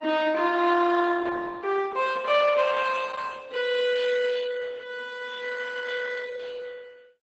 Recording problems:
codec artefacts; Opus, log-spectral distance 4 dB, nothing above 8 kHz

